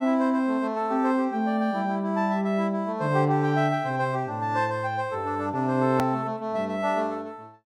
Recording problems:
click at an edit; at 6 s

